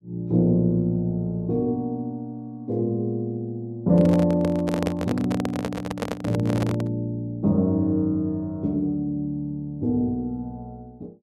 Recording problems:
microphone handling noise; from 4 to 7 s; peak +1 dB vs average level

